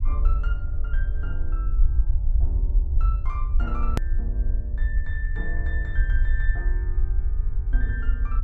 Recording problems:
low-frequency rumble; below 54 Hz, SNR -12 dB
click at an edit; at 4 s

